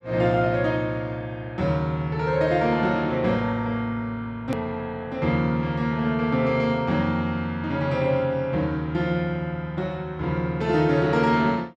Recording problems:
edit click; at 4.5 s

